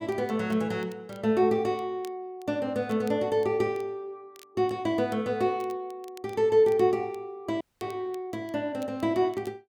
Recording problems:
crackle; vinyl, SNR 28 dB
audio cutting out; at 7.5 s

